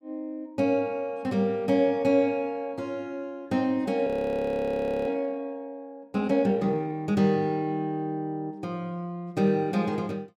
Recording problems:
audio freezing; at 4 s for 1 s

